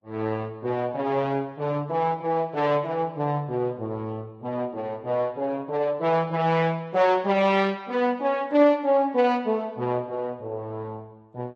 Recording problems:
codec artefacts; MP3, then Vorbis, log-spectral distance 2 dB, nothing above 8 kHz

